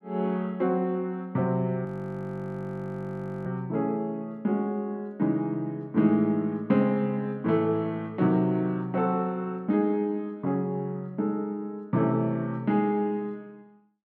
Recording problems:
frozen audio; at 2 s for 1.5 s

